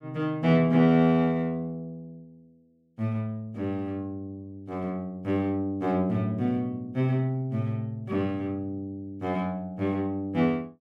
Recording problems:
none

